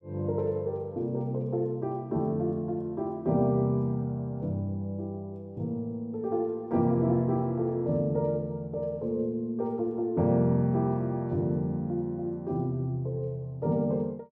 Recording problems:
none

